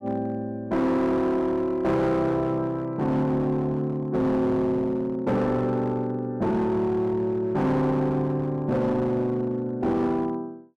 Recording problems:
distorted audio; hard clipping, uneven, signal-to-distortion ratio 10 dB

